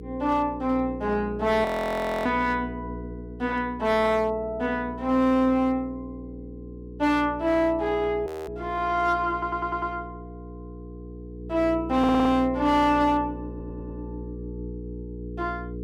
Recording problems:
distorted audio; hard clipping, signal-to-distortion ratio 12 dB
hum; 60 Hz, harmonics up to 480 Hz, SNR 13 dB
frozen audio; at 1.5 s for 0.5 s and at 8.5 s
audio stuttering; at 9.5 s, at 12 s and at 13 s

